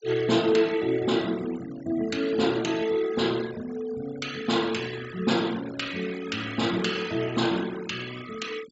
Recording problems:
low-pass filter; nothing above 8 kHz
noise reduction artefacts; signal-to-artefact ratio 16 dB

